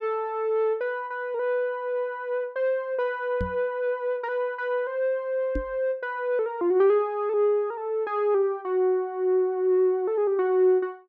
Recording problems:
microphone bump; at 3.5 s and at 5.5 s; peak -2 dB vs average level

